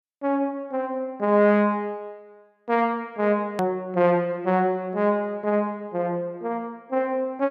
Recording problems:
edit click; at 3.5 s

